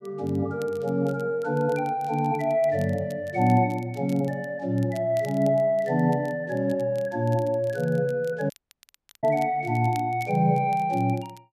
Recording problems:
crackling; vinyl, SNR 27 dB
audio cutting out; at 8.5 s for 0.5 s

